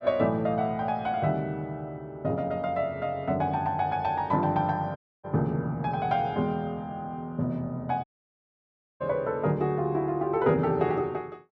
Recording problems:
audio cutting out; at 5 s and at 8 s for 1 s

